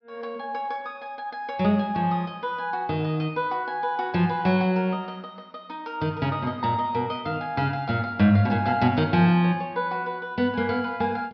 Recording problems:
low-pass filter; nothing above 5.5 kHz

